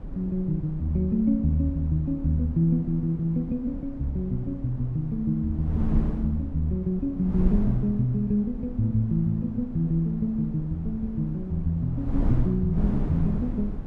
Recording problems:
wind noise; below 150 Hz, SNR 8 dB

